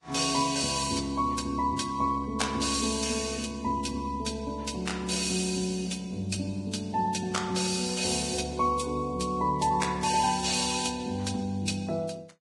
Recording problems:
lossy compression; Vorbis, log-spectral distance 5 dB, nothing above 10.1 kHz

